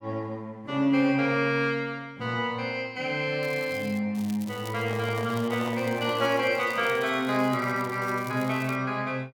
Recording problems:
crackling; at 3.5 s, from 4 to 7.5 s and from 7.5 to 9 s; loose cable, SNR 20 dB
handling noise; from 4.5 to 7 s; peak -8 dB vs average level

